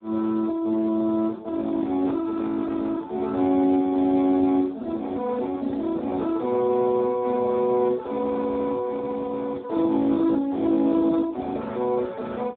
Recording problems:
telephone audio; 240 Hz to 2.2 kHz, Speex

